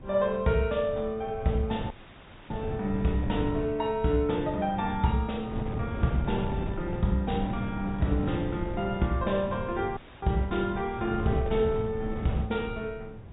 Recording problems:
low-pass filter; nothing above 4 kHz
wind on the microphone; below 230 Hz, SNR 8 dB
dropout; at 2 s for 0.5 s and at 10 s

